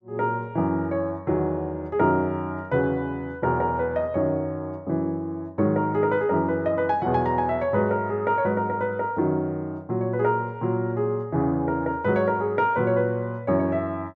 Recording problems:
none

